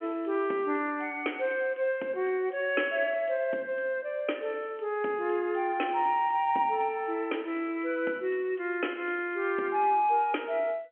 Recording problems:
telephone audio; 240 Hz to 3.3 kHz, G.711

